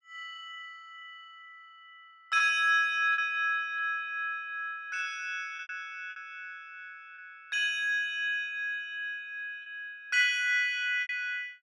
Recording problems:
packet loss; 4% of the sound replaced, filled with repeated pitch periods

